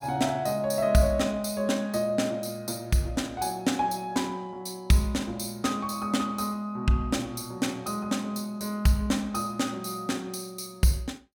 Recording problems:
none

